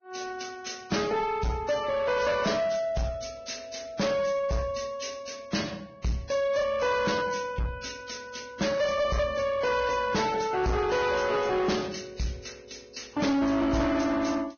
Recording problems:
codec artefacts; Vorbis, log-spectral distance 5 dB, nothing above 6.5 kHz
distorted audio; soft clipping, signal-to-distortion ratio 8 dB

